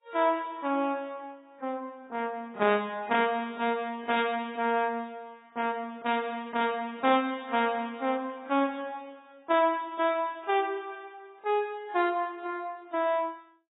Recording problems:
lossy compression; AAC, log-spectral distance 2 dB, nothing above 3.8 kHz

